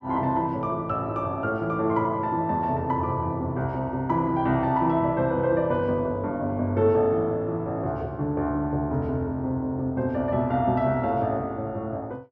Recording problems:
none

